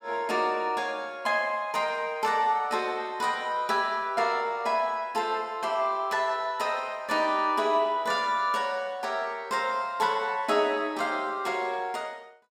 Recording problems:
none

